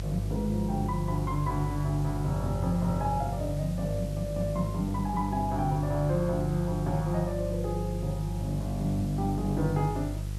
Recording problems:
hum; 50 Hz, harmonics up to 500 Hz, SNR 4 dB
background hiss; slope +2 dB per octave, SNR 20 dB

